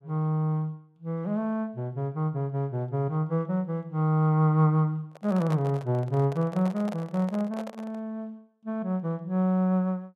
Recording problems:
microphone handling noise; from 5 to 8 s; peak -7 dB vs average level

